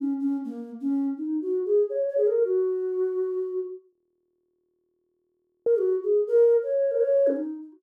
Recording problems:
audio freezing; at 4 s for 1.5 s

